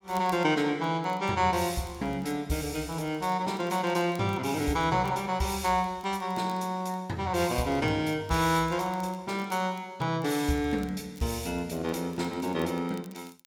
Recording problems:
crackling; vinyl, SNR 27 dB

